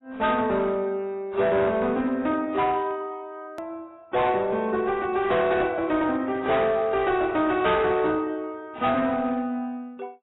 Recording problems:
lossy compression; AAC, log-spectral distance 2 dB, nothing above 3.8 kHz
distorted audio; hard clipping, uneven, signal-to-distortion ratio 10 dB
edit click; at 3.5 s

